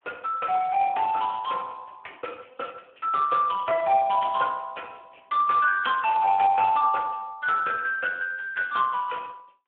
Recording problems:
phone line; 320 Hz to 2.6 kHz, Speex

